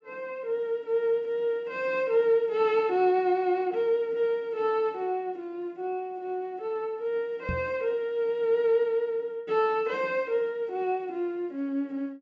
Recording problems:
treble cut off; nothing above 8 kHz
microphone thump; at 7.5 s; peak -1 dB vs average level

